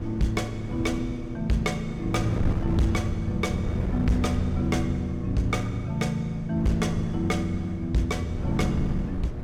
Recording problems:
distortion; hard clipping, uneven, signal-to-distortion ratio 12 dB
hum; 60 Hz, harmonics up to 1.3 kHz, SNR 16 dB
wind noise; below 180 Hz, SNR 7 dB

